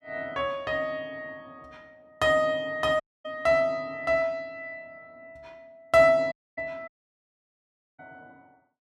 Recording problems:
dropout; at 3 s, at 6.5 s and at 7 s for 1 s

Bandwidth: 15 kHz